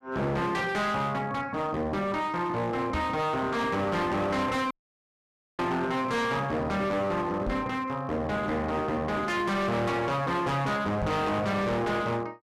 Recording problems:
distortion; hard clipping, signal-to-distortion ratio 7 dB
microphone thump; at 3 s, at 7.5 s and at 11 s; peak 0 dB vs average level
audio cutting out; at 4.5 s for 1 s

